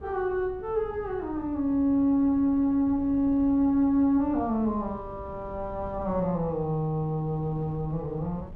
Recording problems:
wind on the microphone; below 180 Hz, SNR 18 dB

